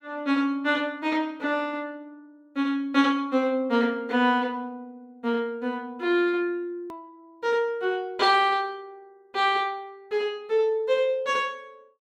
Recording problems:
click at an edit; at 7 s

